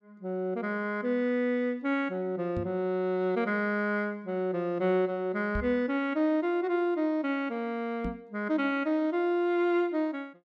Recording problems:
microphone thump; at 2.5 s, at 5.5 s and at 8 s; peak -2 dB vs average level

